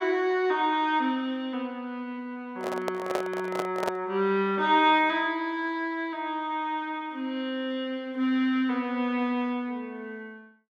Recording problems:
microphone handling noise; from 2.5 to 4 s; peak +2 dB vs average level

